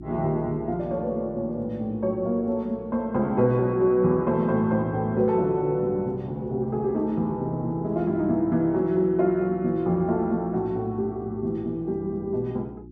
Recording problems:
hum; 60 Hz, harmonics up to 360 Hz, SNR 19 dB

